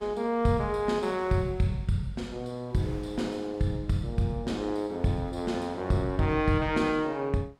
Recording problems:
wind on the microphone; below 1.4 kHz, SNR 25 dB

